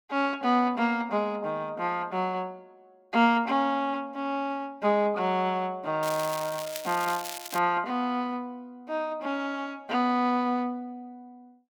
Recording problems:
crackle; from 6 to 7.5 s; loose cable, SNR 10 dB

